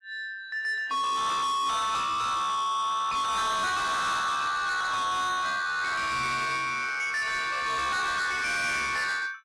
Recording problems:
lossy codec; AAC, log-spectral distance 3 dB, nothing above 11.3 kHz
distortion; soft clipping, signal-to-distortion ratio 6 dB

